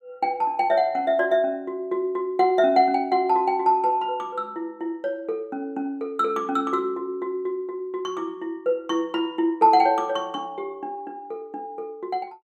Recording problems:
none

